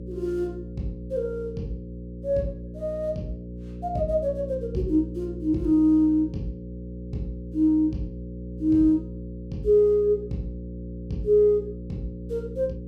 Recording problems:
hum; 60 Hz, harmonics up to 540 Hz, SNR 12 dB

